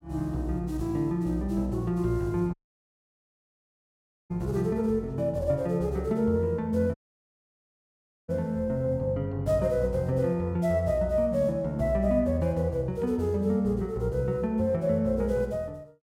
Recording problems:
audio cutting out; at 2.5 s for 2 s and at 7 s for 1.5 s

